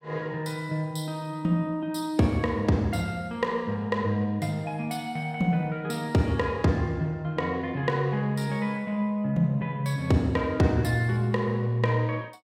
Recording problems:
none

